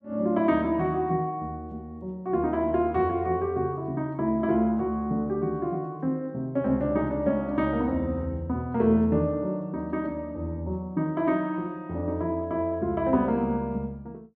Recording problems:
none

